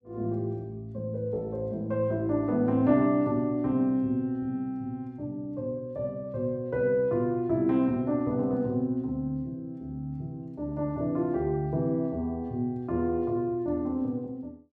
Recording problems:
none

